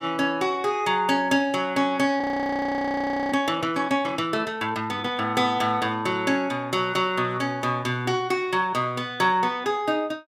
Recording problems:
frozen audio; at 2 s for 1 s

